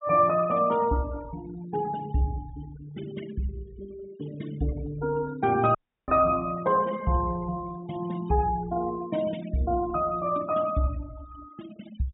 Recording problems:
low-pass filter; nothing above 4 kHz
noise reduction artefacts; signal-to-artefact ratio 19 dB
dropout; at 6 s

